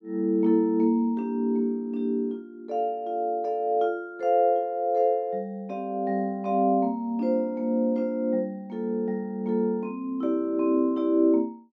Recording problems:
none

